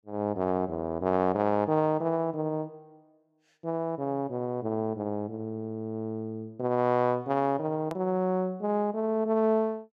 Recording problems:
click at an edit; at 8 s

